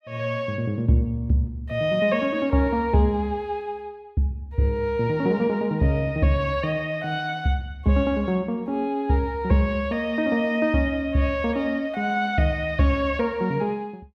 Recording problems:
none

